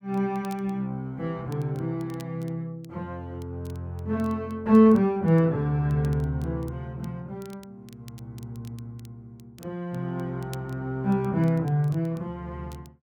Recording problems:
crackle; vinyl, SNR 29 dB

